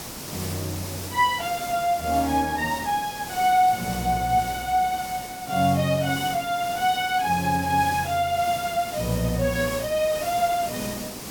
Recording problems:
hiss; SNR 11 dB

